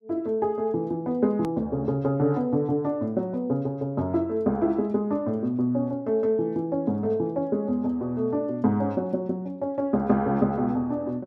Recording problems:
hard cut with a click; at 1.5 s

